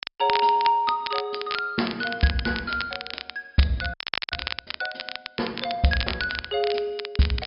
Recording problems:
low-pass filter; nothing above 5.5 kHz
crackling; vinyl, SNR 7 dB
audio freezing; at 4 s

